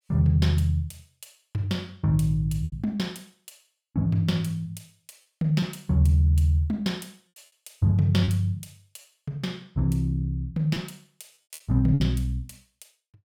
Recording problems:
packet loss; 3% of the sound replaced, filled with repeated pitch periods

